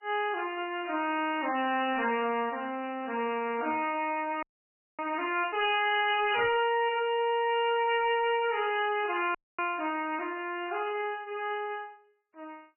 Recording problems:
lossy compression; MP3, log-spectral distance 4 dB, nothing above 2.5 kHz
distortion; hard clipping, uneven, signal-to-distortion ratio 9 dB
frozen audio; at 4.5 s for 0.5 s and at 9.5 s

